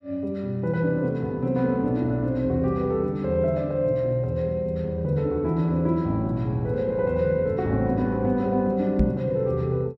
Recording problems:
microphone bump; at 9 s; peak +6 dB vs average level

